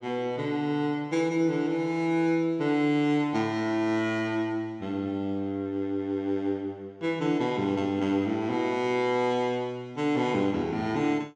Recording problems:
none

